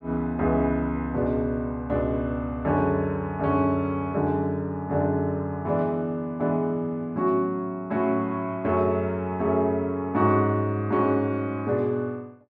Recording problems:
none

